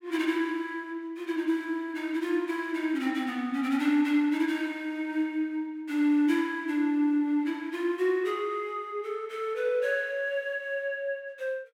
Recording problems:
none

